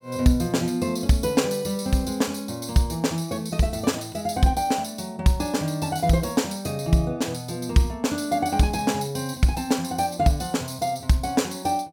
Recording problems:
none

